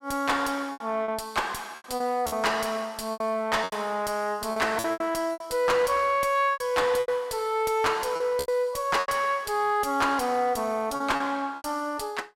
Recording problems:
distorted audio; soft clipping, signal-to-distortion ratio 10 dB
packet loss; 10% of the sound replaced, filled with repeated pitch periods

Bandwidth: 16 kHz